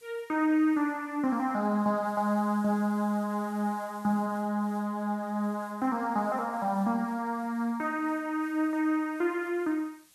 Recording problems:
background hiss; slope +1 dB per octave, SNR 27 dB

